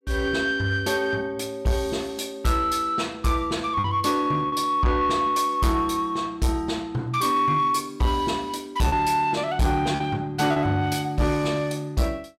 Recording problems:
distorted audio; soft clipping, signal-to-distortion ratio 12 dB
lost packets; 1.6% of the sound replaced, filled with repeated pitch periods

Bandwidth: 16 kHz